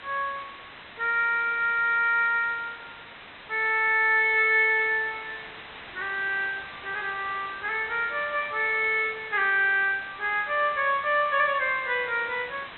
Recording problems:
low-pass filter; nothing above 4 kHz
hiss; SNR 17 dB

